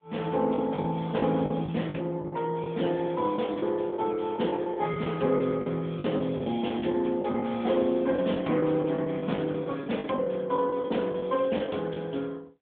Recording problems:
telephone audio; 130 Hz to 3.7 kHz, AMR-NB
lost packets; 10% of the sound replaced, filled with the last packet

